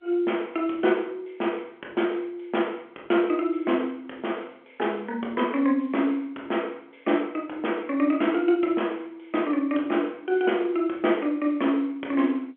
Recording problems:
telephone audio; 240 Hz to 3.4 kHz, G.711

